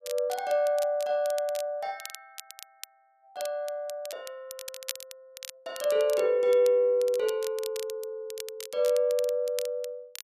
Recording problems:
crackle; vinyl, SNR 15 dB

